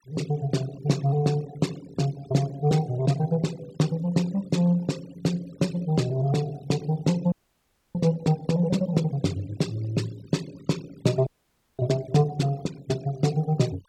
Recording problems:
denoising artefacts; signal-to-artefact ratio 20 dB
audio freezing; at 7.5 s for 0.5 s and at 11 s for 0.5 s

